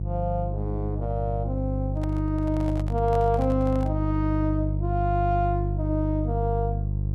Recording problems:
electrical hum; 50 Hz, harmonics up to 350 Hz, SNR 0 dB
microphone handling noise; from 2 to 4 s; peak -7 dB vs average level

